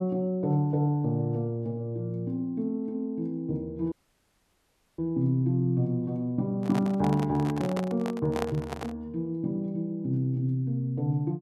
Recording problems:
audio cutting out; at 4 s for 1 s
microphone handling noise; from 6.5 to 9 s; peak 0 dB vs average level

